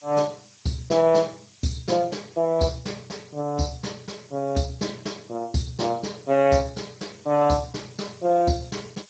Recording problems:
lossy codec; Speex, log-spectral distance 13 dB
hiss; slope +4 dB per octave, SNR 27 dB

